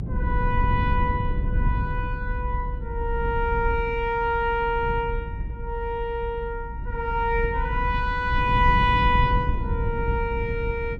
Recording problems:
low-frequency rumble; below 110 Hz, SNR 3 dB

